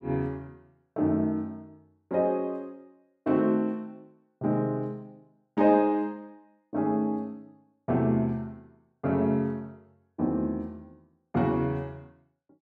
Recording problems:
none

